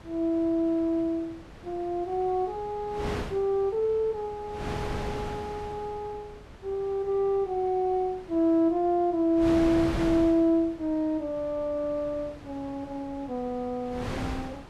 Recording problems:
wind noise; below 900 Hz, SNR 12 dB

